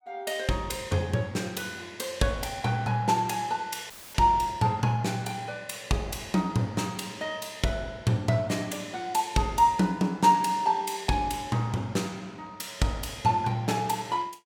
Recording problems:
audio cutting out; at 4 s; filled with static

